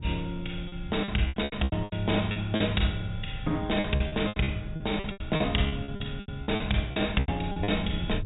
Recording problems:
treble missing; nothing above 4 kHz
wind noise; below 120 Hz, SNR 10 dB
lost packets; 17% of the sound replaced, filled with repeated pitch periods

